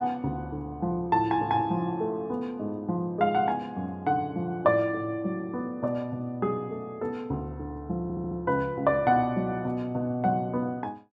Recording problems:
stutter; at 8 s

